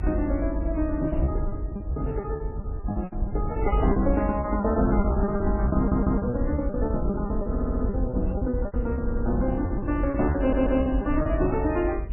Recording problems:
codec artefacts; MP3, then MP3, log-spectral distance 2 dB, nothing above 2.7 kHz
low-frequency rumble; below 80 Hz, SNR 3 dB
wind noise; below 500 Hz, SNR 18 dB
packet loss; 17% of the sound replaced, filled with repeated pitch periods
stutter; 4 times, first at 6 s

